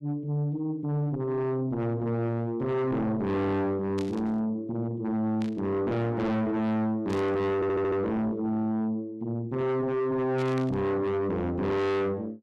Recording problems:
distortion; soft clipping, signal-to-distortion ratio 6 dB
burst of static; 4 times, first at 4 s; peak -10 dB vs average level
stutter; at 7.5 s

